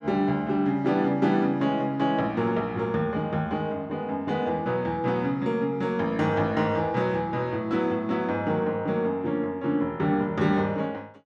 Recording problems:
none

